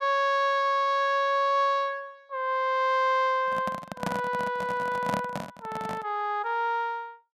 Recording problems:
handling noise; from 3.5 to 6 s; peak 0 dB vs average level

